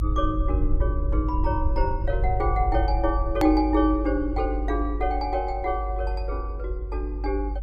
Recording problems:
rumble; below 58 Hz, strongest tone 50 Hz, SNR 2 dB
edit click; at 3.5 s

